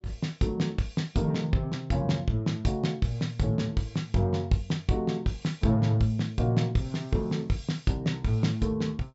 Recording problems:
treble cut off; nothing above 8 kHz

